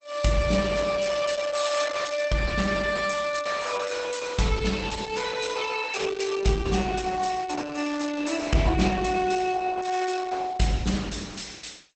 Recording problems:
lossy codec; Opus, log-spectral distance 6 dB, nothing above 8 kHz

